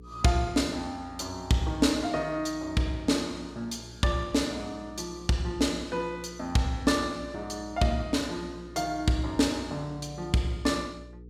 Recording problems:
electrical hum; 60 Hz, harmonics up to 480 Hz, SNR 19 dB

